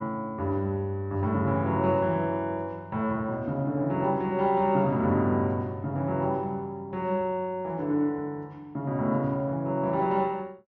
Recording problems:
low-pass filter; nothing above 6.8 kHz

